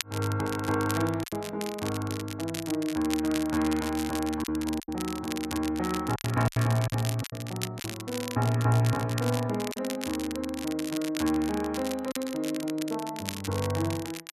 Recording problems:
crackle; vinyl, SNR 10 dB
packet loss; 4% of the sound replaced, filled with silence

